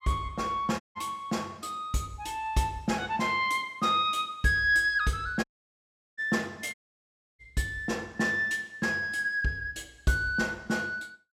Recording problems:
audio cutting out; at 1 s, at 5.5 s for 0.5 s and at 6.5 s for 0.5 s

